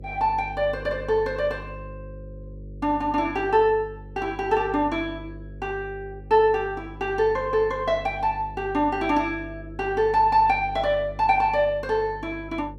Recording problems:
electrical hum; 50 Hz, harmonics up to 550 Hz, SNR 17 dB

